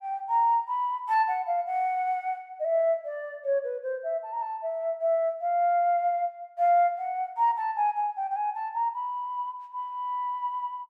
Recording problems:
none

